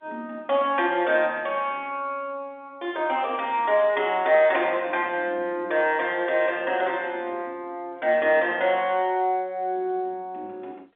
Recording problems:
telephone audio; 240 Hz to 3.6 kHz, G.711

